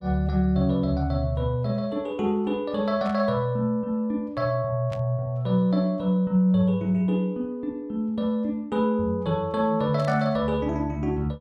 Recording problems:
burst of static; at 3 s, at 5 s and at 10 s; peak -13 dB vs average level

